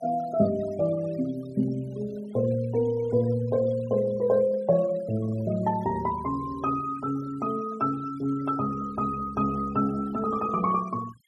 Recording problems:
noise reduction artefacts; signal-to-artefact ratio 20 dB

